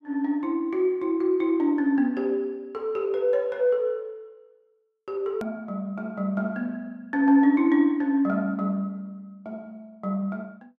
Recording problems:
edit click; at 5.5 s

